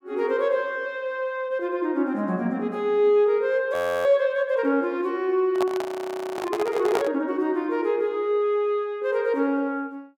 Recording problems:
audio freezing; at 3.5 s and at 6 s for 0.5 s
microphone handling noise; from 5.5 to 7 s; peak +1 dB vs average level

